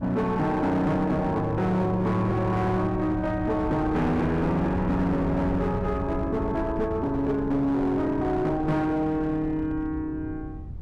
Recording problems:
distortion; hard clipping, signal-to-distortion ratio 10 dB
wind noise; below 140 Hz, SNR 11 dB

